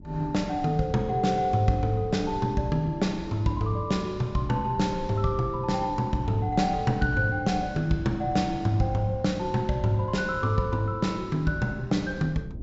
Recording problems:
treble cut off; nothing above 7.6 kHz
wind noise; below 190 Hz, SNR 15 dB

